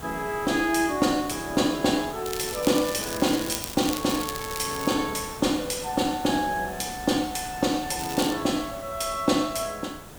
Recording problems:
background hiss; slope -5 dB per octave, SNR 13 dB
crackle; from 2.5 to 5 s and at 8 s; loose cable, SNR 9 dB

